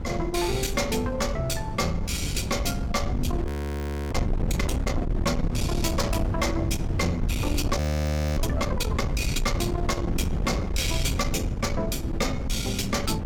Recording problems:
distortion; soft clipping, signal-to-distortion ratio 12 dB
wind noise; below 200 Hz, SNR 2 dB
audio freezing; at 3.5 s for 0.5 s and at 8 s for 0.5 s

